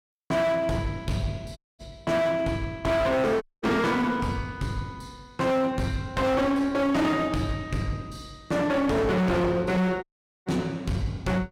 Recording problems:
distorted audio; hard clipping, uneven, signal-to-distortion ratio 6 dB
dropout; at 1.5 s, at 3.5 s and at 10 s

